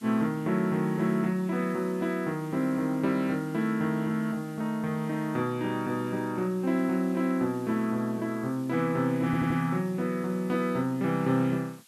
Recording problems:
hiss; slope +2 dB per octave, SNR 26 dB
audio stuttering; at 9.5 s

